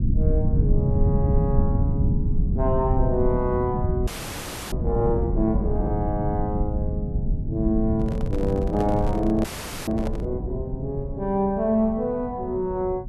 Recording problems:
low-frequency rumble; below 140 Hz, SNR 0 dB
audio freezing; at 4 s for 0.5 s and at 9.5 s
handling noise; from 8 to 10 s; peak -4 dB vs average level

